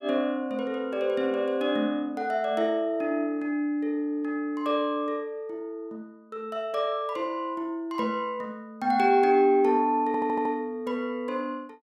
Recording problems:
stutter; at 10 s

